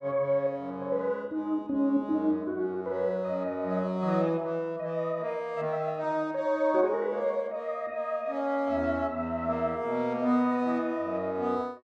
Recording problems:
none

